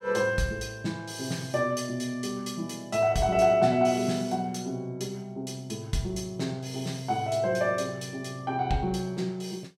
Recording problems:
none

